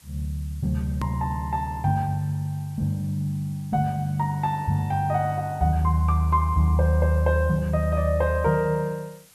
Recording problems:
background hiss; slope 0 dB per octave, SNR 27 dB
hard cut with a click; at 1 s

